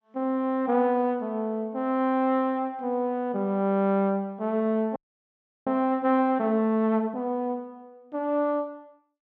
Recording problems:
audio freezing; at 5 s for 0.5 s

